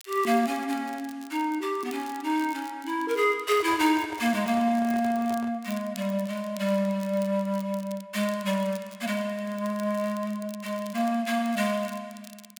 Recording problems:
crackle; vinyl, SNR 21 dB
handling noise; from 3.5 to 5.5 s; peak -9 dB vs average level

